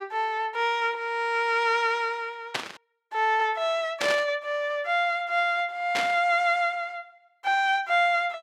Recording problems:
static burst; at 2.5 s, at 4 s and at 6 s; peak +1 dB vs average level

